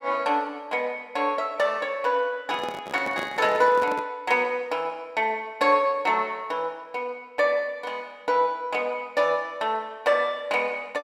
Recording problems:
microphone handling noise; from 2.5 to 4 s; peak -4 dB vs average level

